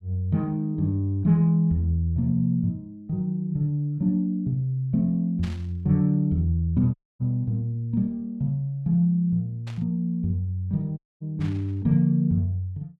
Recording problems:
burst of static; at 5.5 s, at 9.5 s and at 11 s; peak -13 dB vs average level
audio cutting out; at 7 s and at 11 s

